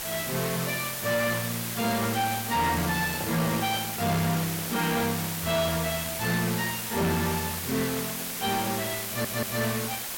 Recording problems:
distorted audio; soft clipping, signal-to-distortion ratio 5 dB
hiss; SNR 4 dB
microphone handling noise; from 2.5 to 6 s; peak -3 dB vs average level
stutter; at 9 s

